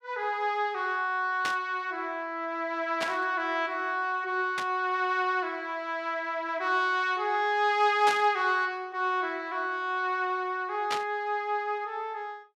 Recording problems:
burst of static; 5 times, first at 1.5 s; peak 0 dB vs average level

